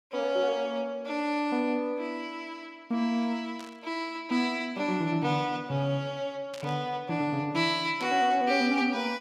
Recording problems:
static burst; at 3.5 s, at 6.5 s and at 8 s; peak -10 dB vs average level

